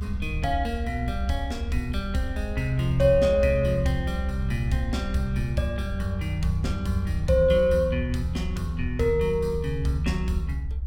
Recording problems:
low-frequency rumble; below 78 Hz, strongest tone 64 Hz, SNR 6 dB

